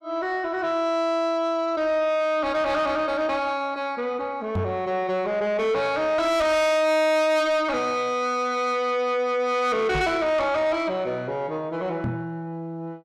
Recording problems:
distorted audio; soft clipping, signal-to-distortion ratio 6 dB
microphone bump; at 4.5 s, at 10 s and at 12 s; peak 0 dB vs average level

